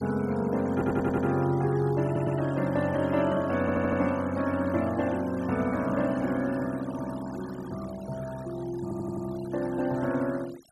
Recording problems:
noise reduction artefacts; signal-to-artefact ratio 18 dB
audio stuttering; 4 times, first at 0.5 s

